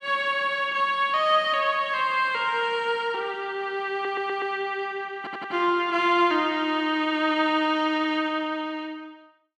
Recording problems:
audio stuttering; at 4 s and at 5 s

